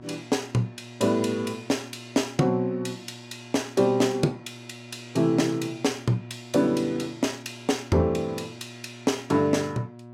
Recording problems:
hum; 60 Hz, harmonics up to 1.3 kHz, SNR 19 dB

